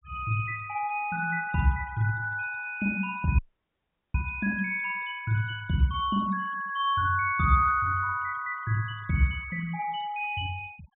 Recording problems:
low-pass filter; nothing above 4 kHz
noise reduction artefacts; signal-to-artefact ratio 21 dB
dropout; at 3.5 s for 0.5 s

